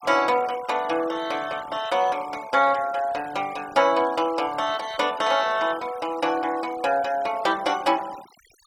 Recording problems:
denoising artefacts; signal-to-artefact ratio 19 dB

